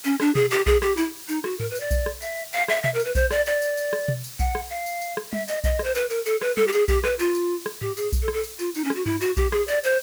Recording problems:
hiss; slope +2 dB per octave, SNR 13 dB

